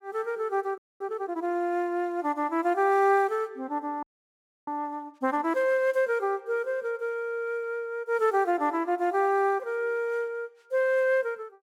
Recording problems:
frozen audio; at 1 s and at 4 s for 0.5 s

